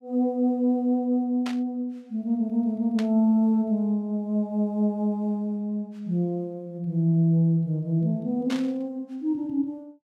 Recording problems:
burst of static; at 1.5 s, at 3 s and at 8.5 s; peak -6 dB vs average level

